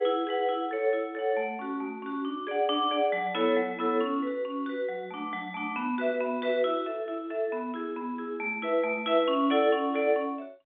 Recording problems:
phone line; 220 Hz to 3.9 kHz, G.711

